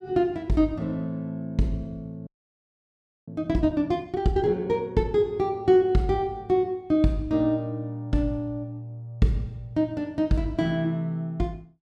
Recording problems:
frozen audio; at 2.5 s for 1 s

